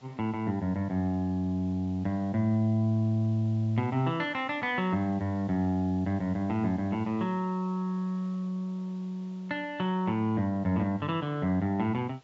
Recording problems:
low-pass filter; nothing above 8 kHz
background hiss; SNR 29 dB

